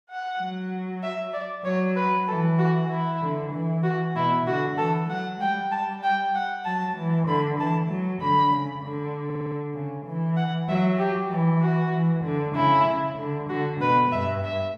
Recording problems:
stutter; at 9.5 s

